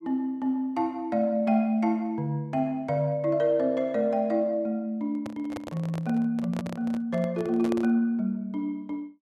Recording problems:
handling noise; from 5 to 8 s; peak -4 dB vs average level

